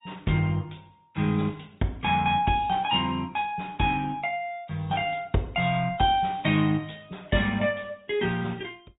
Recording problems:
treble missing; nothing above 3.2 kHz
lossy compression; Opus, log-spectral distance 3 dB

